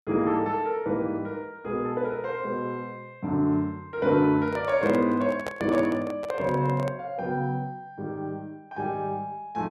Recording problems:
handling noise; from 4.5 to 7 s; peak -1 dB vs average level

